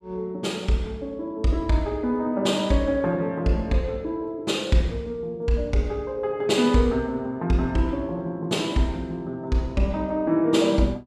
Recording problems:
none

